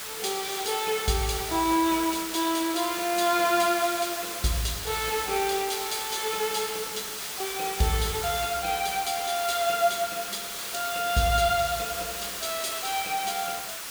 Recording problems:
hiss; SNR 5 dB

